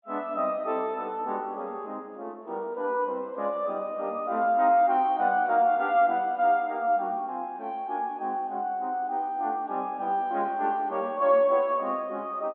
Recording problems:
treble cut off; nothing above 4 kHz

